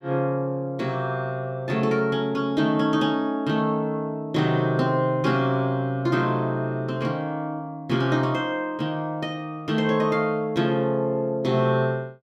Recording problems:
none

